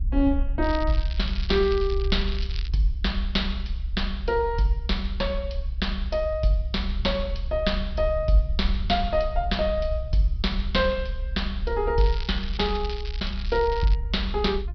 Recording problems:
treble cut off; nothing above 5.5 kHz
rumble; below 62 Hz, SNR 5 dB
crackling; from 0.5 to 2.5 s and from 12 to 14 s; loose cable, SNR 14 dB

